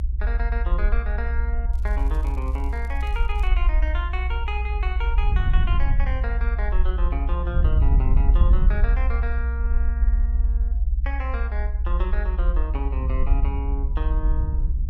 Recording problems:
rumble; below 62 Hz, SNR -9 dB
wind noise; below 70 Hz, SNR -5 dB
crackle; from 1.5 to 3.5 s; loose cable, SNR 22 dB

